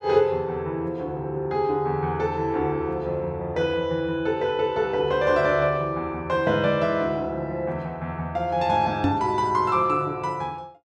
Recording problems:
microphone thump; at 9 s; peak +5 dB vs average level

